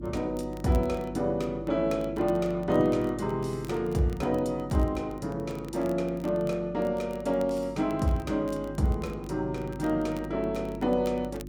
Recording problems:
electrical hum; 50 Hz, harmonics up to 350 Hz, SNR 13 dB
crackling; vinyl, SNR 26 dB

